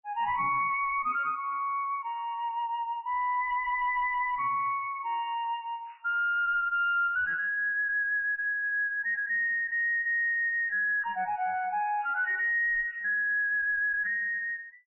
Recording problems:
codec artefacts; MP3, log-spectral distance 2 dB
distorted audio; soft clipping, signal-to-distortion ratio 10 dB

